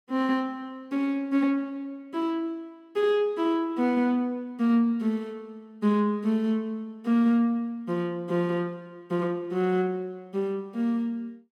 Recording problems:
none

